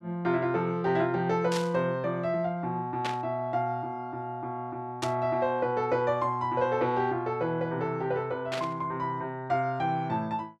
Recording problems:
static burst; 4 times, first at 1.5 s; peak -1 dB vs average level

